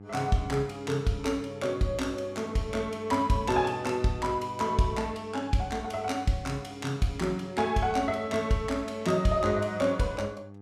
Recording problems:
electrical hum; 50 Hz, harmonics up to 1.2 kHz, SNR 18 dB

